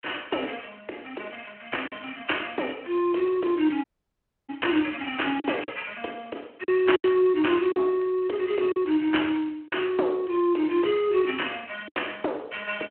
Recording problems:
telephone audio; 280 Hz to 3.2 kHz, Speex
packet loss; 4% of the sound replaced, filled with silence
audio cutting out; at 4 s for 0.5 s

